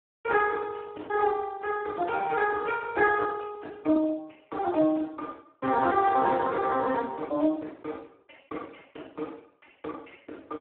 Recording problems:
phone line; 260 Hz to 2.3 kHz, Speex

